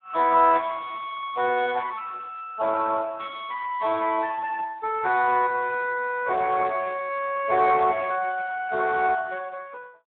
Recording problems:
phone line; 280 Hz to 3.3 kHz, Speex

